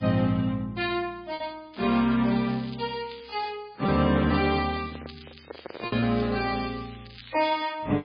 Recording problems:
codec artefacts; MP3, log-spectral distance 8 dB, nothing above 4.4 kHz
packet loss; 3% of the sound replaced, filled with repeated pitch periods
crackle; from 1.5 to 3.5 s and from 4.5 to 7.5 s; loose cable, SNR 19 dB
handling noise; from 4 to 6 s; peak -6 dB vs average level

